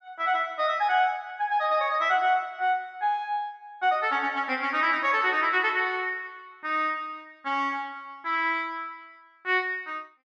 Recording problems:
none

